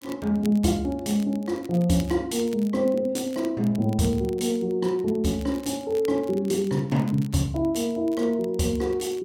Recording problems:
crackling; vinyl, SNR 24 dB

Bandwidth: 16.5 kHz